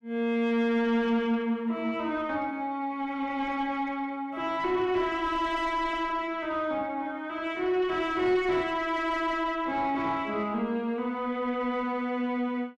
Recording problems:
distorted audio; soft clipping, signal-to-distortion ratio 11 dB

